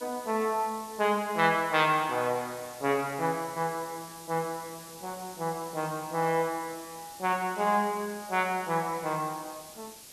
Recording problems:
hiss; SNR 16 dB

